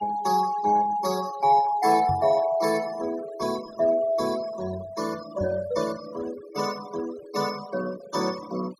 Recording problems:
noise reduction artefacts; signal-to-artefact ratio 17 dB
microphone bump; at 2 s and at 5.5 s; peak -2 dB vs average level

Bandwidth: 16 kHz